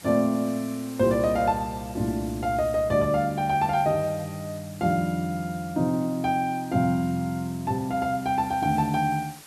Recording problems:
hiss; slope -1 dB per octave, SNR 20 dB

